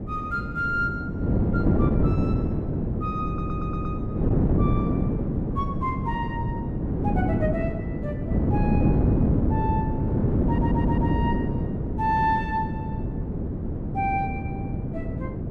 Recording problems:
wind on the microphone; below 290 Hz, SNR -5 dB
stutter; at 3.5 s and at 10 s

